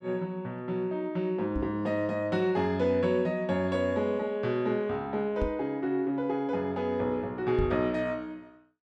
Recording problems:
knock on the microphone; at 1.5 s, at 5.5 s and at 7.5 s; peak 0 dB vs average level

